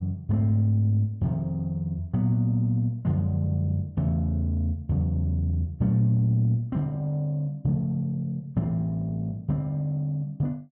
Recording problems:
none

